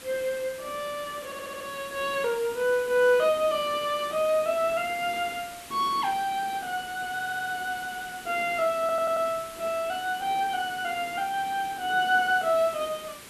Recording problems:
hiss; slope -2 dB per octave, SNR 16 dB
audio stuttering; at 1.5 s, at 7 s and at 9 s

